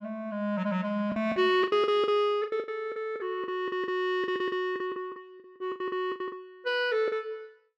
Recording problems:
lost packets; 16% of the sound replaced, filled with the last packet

